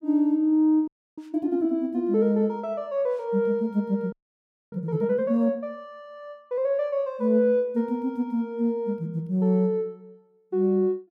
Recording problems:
frozen audio; at 1 s and at 4 s for 0.5 s

